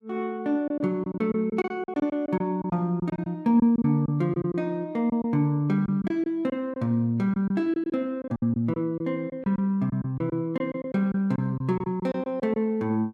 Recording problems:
lost packets; 11% of the sound replaced, filled with silence

